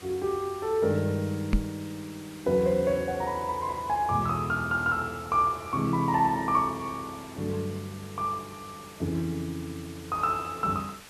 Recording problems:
background hiss; slope -1 dB per octave, SNR 19 dB
microphone bump; at 1.5 s; peak +7 dB vs average level

